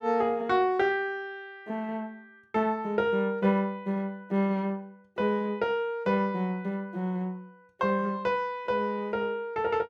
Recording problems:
none

